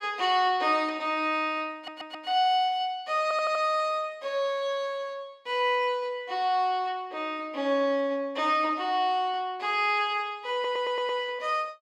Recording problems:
stutter; at 2 s, at 3 s and at 11 s

